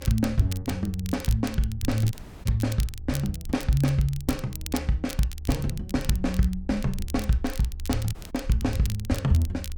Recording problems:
electrical hum; 50 Hz, harmonics up to 850 Hz, SNR 29 dB
rumble; below 74 Hz, SNR 12 dB
crackling; vinyl, SNR 14 dB
audio cutting out; at 2 s and at 8 s

